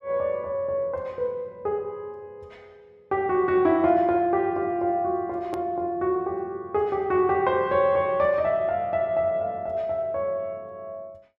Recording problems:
hard cut with a click; at 5.5 s

